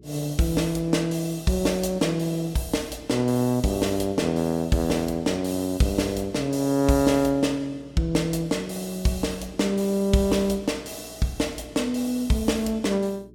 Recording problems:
electrical hum; 60 Hz, harmonics up to 420 Hz, SNR 25 dB

